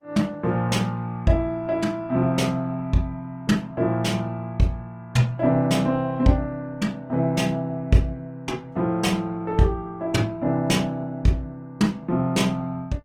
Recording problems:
lossy compression; Opus, log-spectral distance 2 dB, nothing above 19 kHz

